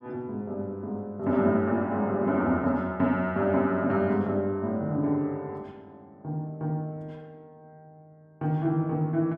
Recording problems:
none

